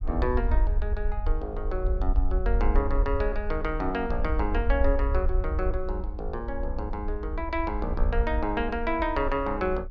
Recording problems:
rumble; below 58 Hz, SNR 0 dB

